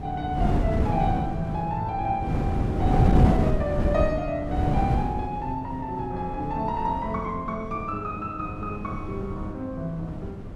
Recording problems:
wind on the microphone; below 240 Hz, SNR -2 dB

